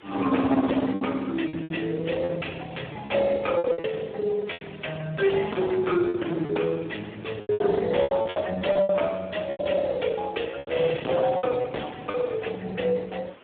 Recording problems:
telephone audio; 280 Hz to 2.3 kHz, Speex
distorted audio; hard clipping, signal-to-distortion ratio 12 dB
background hiss; SNR 25 dB
packet loss; 10% of the sound replaced, filled with repeated pitch periods

